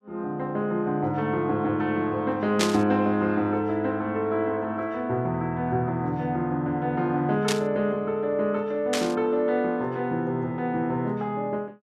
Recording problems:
static burst; at 2.5 s, at 7.5 s and at 9 s; peak +4 dB vs average level

